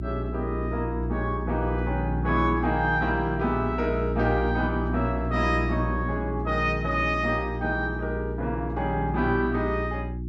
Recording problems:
hum; 60 Hz, harmonics up to 360 Hz, SNR 4 dB

